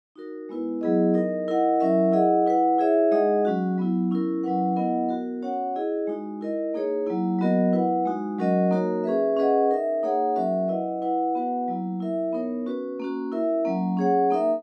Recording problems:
none

